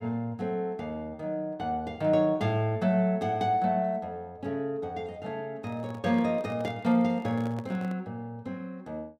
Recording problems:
handling noise; from 5.5 to 8 s; peak -8 dB vs average level

